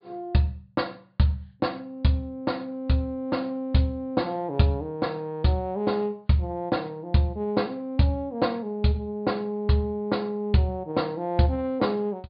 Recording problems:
low-pass filter; nothing above 4.8 kHz

